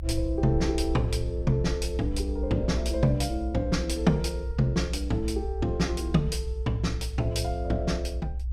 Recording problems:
low-frequency rumble; below 64 Hz, strongest tone 62 Hz, SNR 4 dB

